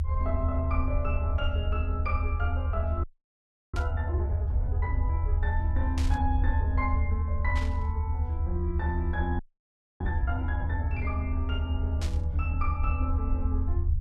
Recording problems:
low-frequency rumble; below 80 Hz, SNR -6 dB
audio freezing; at 3 s for 0.5 s and at 9.5 s for 0.5 s
burst of static; 4 times, first at 4 s; peak 0 dB vs average level

